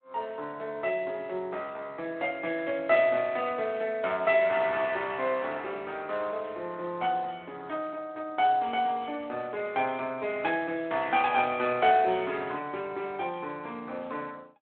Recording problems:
telephone audio; 260 Hz to 3.8 kHz, Speex

